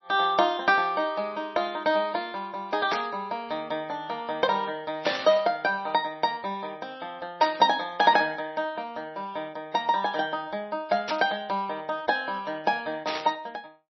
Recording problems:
codec artefacts; MP3, log-spectral distance 2 dB
static burst; 5 times, first at 3 s; peak +1 dB vs average level

